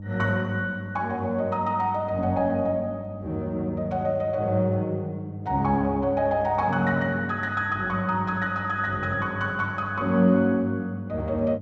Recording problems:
hum; 50 Hz, harmonics up to 600 Hz, SNR 13 dB

